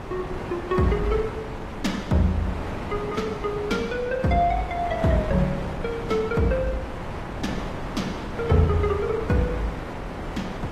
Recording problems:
lossy compression; AAC, log-spectral distance 2 dB
wind on the microphone; below 920 Hz, SNR 7 dB

